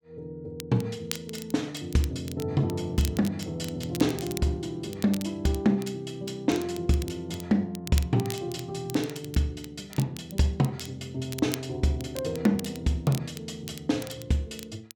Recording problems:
crackle; vinyl, SNR 14 dB

